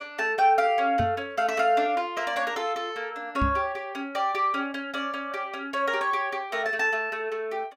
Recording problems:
microphone bump; at 1 s and at 3.5 s; peak +1 dB vs average level

